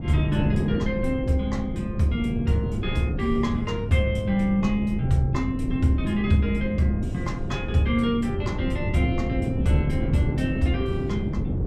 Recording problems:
rumble; below 100 Hz, SNR 15 dB
wind noise; below 240 Hz, SNR 4 dB

